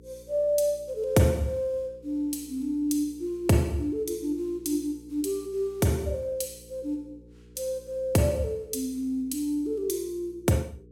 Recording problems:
hum; 60 Hz, harmonics up to 480 Hz, SNR 24 dB

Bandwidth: 16.5 kHz